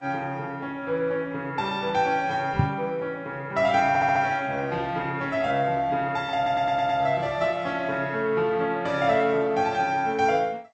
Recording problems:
codec artefacts; G.722, then Vorbis, log-spectral distance 2 dB, nothing above 7.6 kHz
knock on the microphone; at 2.5 s; peak +7 dB vs average level
audio stuttering; at 4 s and at 6.5 s

